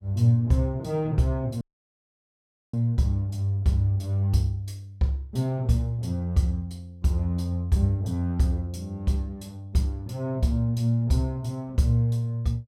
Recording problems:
audio cutting out; at 1.5 s for 1 s

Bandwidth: 16 kHz